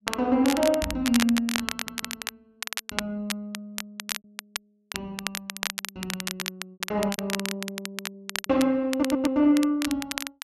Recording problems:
crackling; vinyl, SNR 7 dB
lost packets; 3% of the sound replaced, filled with repeated pitch periods
stutter; at 1.5 s and at 9 s

